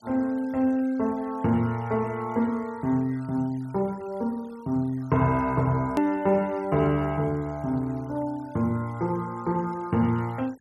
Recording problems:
denoising artefacts; signal-to-artefact ratio 27 dB
click at an edit; at 6 s

